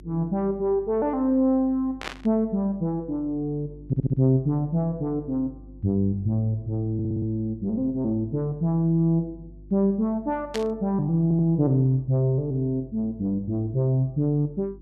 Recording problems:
hum; 50 Hz, harmonics up to 350 Hz, SNR 22 dB
burst of static; at 2 s and at 11 s; peak -3 dB vs average level
stutter; at 4 s, at 7 s and at 11 s

